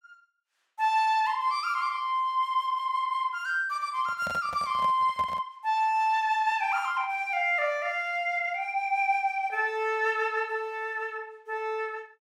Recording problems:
handling noise; from 4 to 5.5 s; peak -7 dB vs average level

